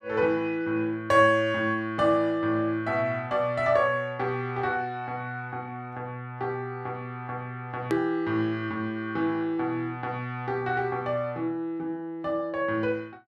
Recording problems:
edit click; at 8 s

